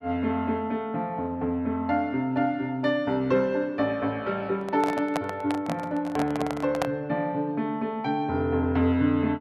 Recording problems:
handling noise; from 4.5 to 7 s; peak +3 dB vs average level

